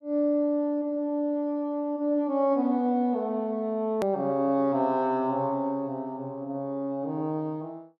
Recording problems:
edit click; at 4 s

